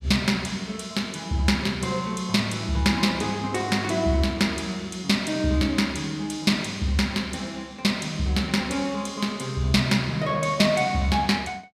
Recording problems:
none

